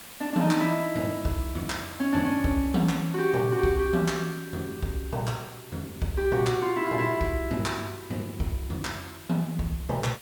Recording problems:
hiss; slope -1 dB per octave, SNR 17 dB

